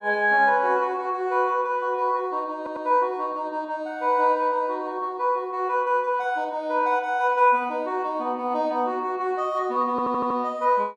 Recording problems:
stutter; at 2.5 s and at 10 s

